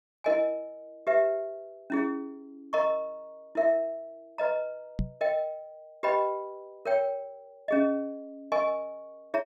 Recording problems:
microphone thump; at 5 s; peak +2 dB vs average level

